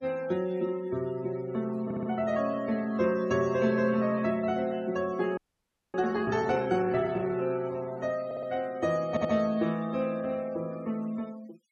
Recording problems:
noise reduction artefacts; signal-to-artefact ratio 21 dB
stutter; at 2 s, at 8.5 s and at 9 s
audio freezing; at 5.5 s for 0.5 s

